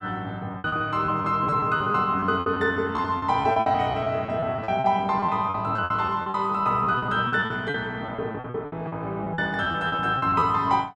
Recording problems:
packet loss; 17% of the sound replaced, filled with repeated pitch periods

